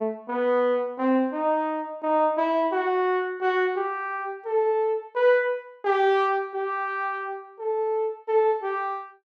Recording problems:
none

